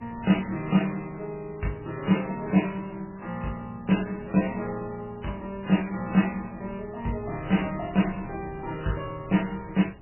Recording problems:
lossy compression; MP3, log-spectral distance 5 dB, nothing above 2.8 kHz
wind noise; below 300 Hz, SNR 19 dB

